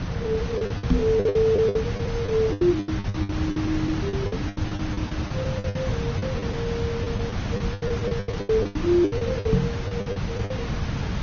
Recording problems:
codec artefacts; MP2, then Opus, log-spectral distance 5 dB
background hiss; slope -4 dB per octave, SNR 2 dB
packet loss; 19% of the sound replaced, filled with the last packet
microphone thump; at 1 s and at 9.5 s; peak +10 dB vs average level

